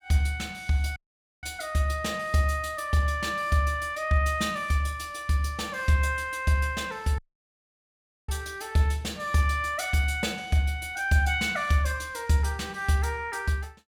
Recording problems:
dropout; at 1 s and at 7 s for 1 s

